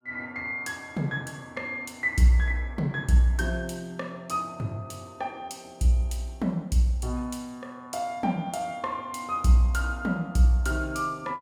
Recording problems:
none

